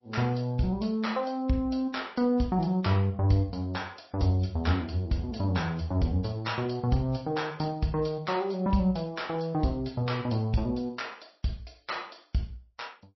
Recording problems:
codec artefacts; MP3, log-spectral distance 3 dB, nothing above 5.7 kHz

